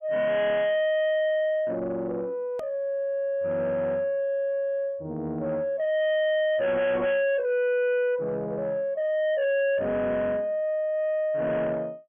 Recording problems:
treble missing; nothing above 3.4 kHz
distortion; soft clipping, signal-to-distortion ratio 7 dB
click at an edit; at 2.5 s

